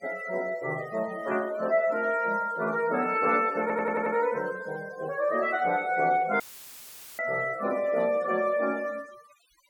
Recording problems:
denoising artefacts; signal-to-artefact ratio 20 dB
stutter; at 3.5 s
dropout; at 6.5 s for 1 s; filled with static

